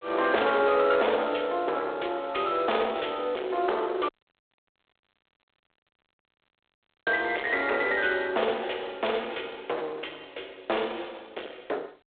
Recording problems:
phone line; 320 Hz to 3.7 kHz, G.726
distorted audio; soft clipping, signal-to-distortion ratio 8 dB
dropout; at 4 s for 3 s

